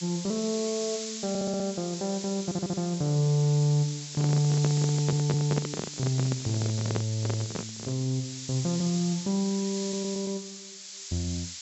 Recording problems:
treble missing; nothing above 7.7 kHz
background hiss; slope +7 dB per octave, SNR 8 dB
audio stuttering; 4 times, first at 1.5 s
handling noise; from 4 to 8 s; peak +1 dB vs average level

